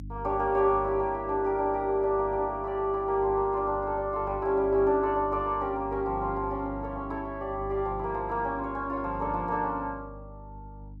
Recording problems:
hum; 50 Hz, harmonics up to 300 Hz, SNR 15 dB

